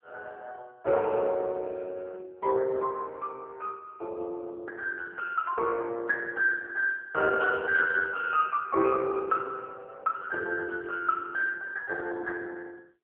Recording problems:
telephone audio; 320 Hz to 3 kHz, AMR-NB

